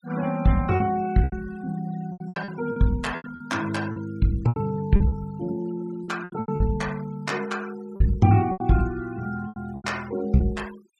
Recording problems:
denoising artefacts; signal-to-artefact ratio 20 dB
lost packets; 12% of the sound replaced, filled with repeated pitch periods

